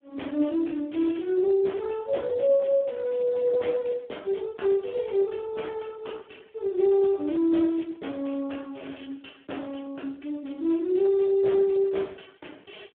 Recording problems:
telephone audio; 240 Hz to 3.4 kHz, Speex

